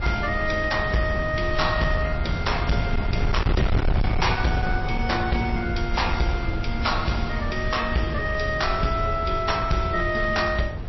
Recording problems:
lossy compression; MP3, log-spectral distance 4 dB, nothing above 5.7 kHz
distorted audio; hard clipping, signal-to-distortion ratio 11 dB
wind noise; below 120 Hz, SNR 4 dB

